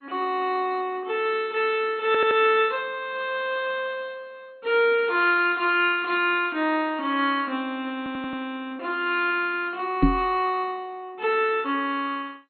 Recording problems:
codec artefacts; MP2, log-spectral distance 3 dB, nothing above 3.7 kHz
stutter; at 2 s and at 8 s
microphone thump; at 10 s; peak +8 dB vs average level

